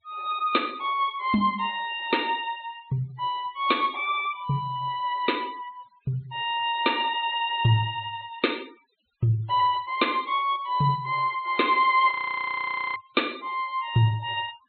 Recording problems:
low-pass filter; nothing above 4.3 kHz
noise reduction artefacts; signal-to-artefact ratio 24 dB
frozen audio; at 12 s for 1 s

